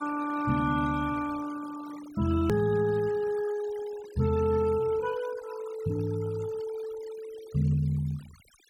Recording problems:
noise reduction artefacts; signal-to-artefact ratio 18 dB
hard cut with a click; at 2.5 s

